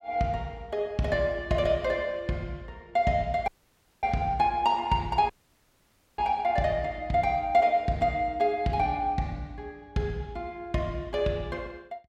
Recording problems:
dropout; at 3.5 s for 0.5 s and at 5.5 s for 1 s

